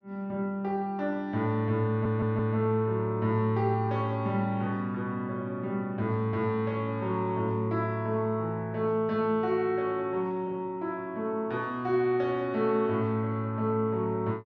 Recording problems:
stutter; at 2 s

